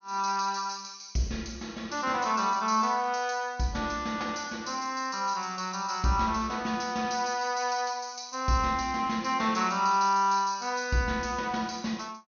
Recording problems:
treble missing; nothing above 6.5 kHz

